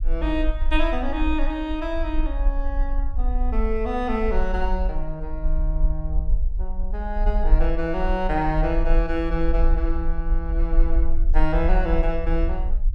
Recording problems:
rumble; below 44 Hz, strongest tone 24 Hz, SNR -1 dB

